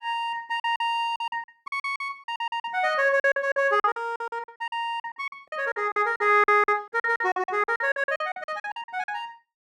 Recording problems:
lost packets; 20% of the sound replaced, filled with silence

